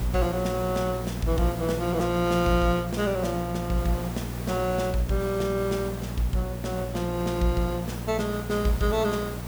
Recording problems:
hum; 60 Hz, harmonics up to 720 Hz, SNR 7 dB
background hiss; slope -5 dB per octave, SNR 12 dB

